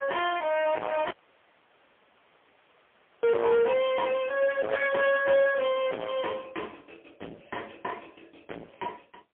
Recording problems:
telephone audio; 280 Hz to 3.3 kHz, AMR-NB, then MP3
distortion; soft clipping, signal-to-distortion ratio 6 dB
audio cutting out; at 1 s for 2 s

